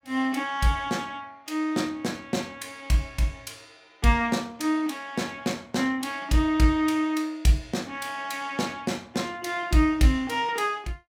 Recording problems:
none

